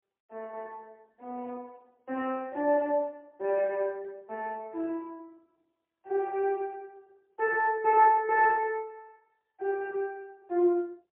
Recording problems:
phone line; 300 Hz to 3.5 kHz, AMR-NB, then MP3

